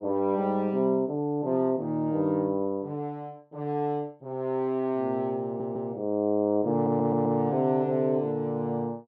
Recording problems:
stutter; at 5.5 s and at 6.5 s

